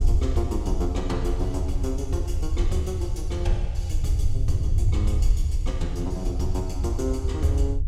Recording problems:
low-frequency rumble; below 80 Hz, SNR -3 dB

